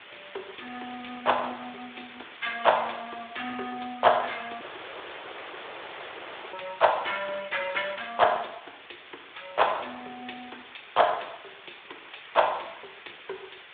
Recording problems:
phone line; 300 Hz to 3.6 kHz, Speex
hiss; SNR 18 dB
dropout; at 4.5 s for 2 s

